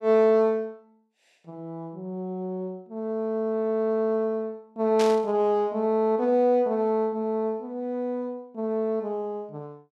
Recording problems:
burst of static; at 5 s; peak -3 dB vs average level

